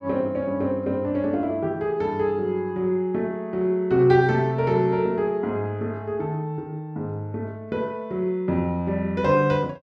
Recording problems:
none

